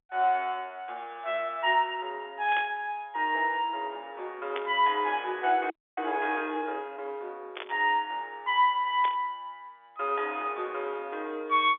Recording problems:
phone line; 280 Hz to 3.7 kHz, G.711
burst of static; 4 times, first at 2.5 s; peak -2 dB vs average level
audio freezing; at 5.5 s

